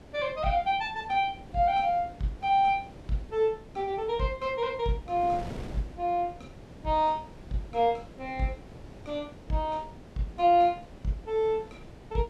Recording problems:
wind on the microphone; below 490 Hz, SNR 18 dB

